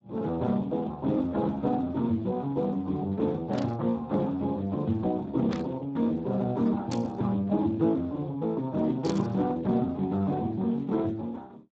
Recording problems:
lossy compression; Speex, log-spectral distance 2 dB
burst of static; 4 times, first at 3.5 s; peak -5 dB vs average level

